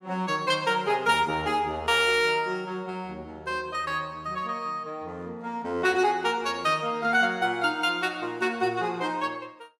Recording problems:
none

